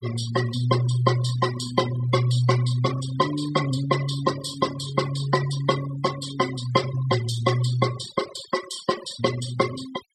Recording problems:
denoising artefacts; signal-to-artefact ratio 12 dB

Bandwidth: 14.5 kHz